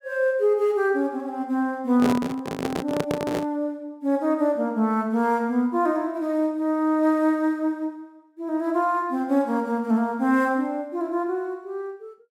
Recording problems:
microphone handling noise; from 2 to 3.5 s; peak +2 dB vs average level

